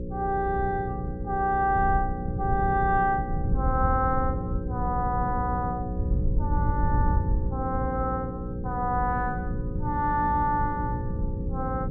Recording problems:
electrical hum; 60 Hz, harmonics up to 540 Hz, SNR 7 dB
rumble; below 150 Hz, SNR 8 dB
wind noise; below 100 Hz, SNR 5 dB

